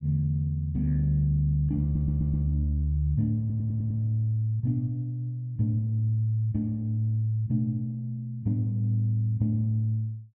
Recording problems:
audio stuttering; at 2 s and at 3.5 s

